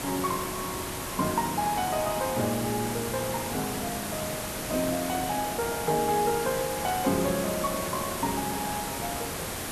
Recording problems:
background hiss; slope -4 dB per octave, SNR 3 dB

